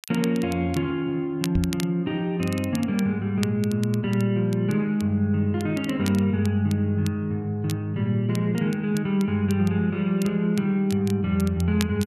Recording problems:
crackle; vinyl, SNR 18 dB
microphone thump; at 1.5 s; peak +3 dB vs average level

